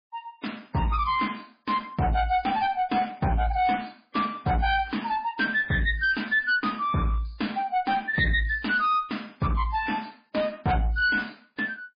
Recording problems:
lossy codec; MP3, log-spectral distance 5 dB, nothing above 4.6 kHz
distorted audio; hard clipping, uneven, signal-to-distortion ratio 10 dB

